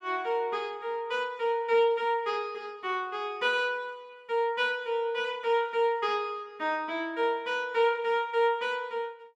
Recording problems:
none

